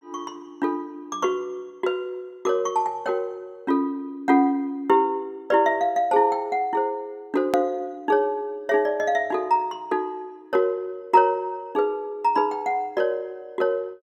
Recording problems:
hard cut with a click; at 7.5 s

